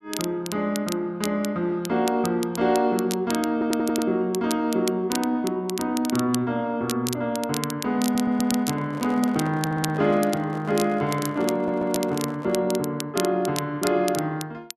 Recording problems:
crackle; vinyl, SNR 11 dB
audio stuttering; 4 times, first at 3.5 s
handling noise; from 8 to 13 s; peak -10 dB vs average level

